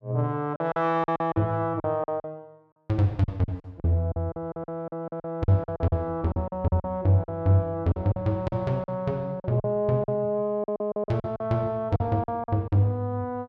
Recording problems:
packet loss; 14% of the sound replaced, filled with silence

